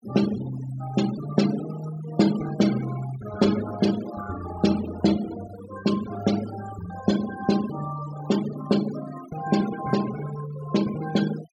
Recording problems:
noise reduction artefacts; signal-to-artefact ratio 12 dB

